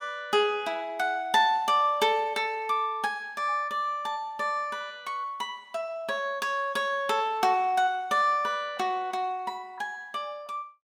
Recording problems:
none

